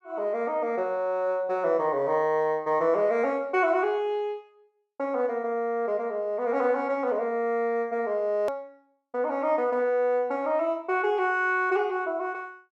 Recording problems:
hard cut with a click; at 8.5 s

